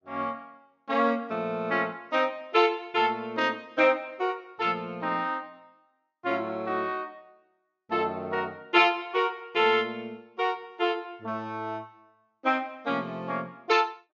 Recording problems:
low-pass filter; nothing above 7.1 kHz

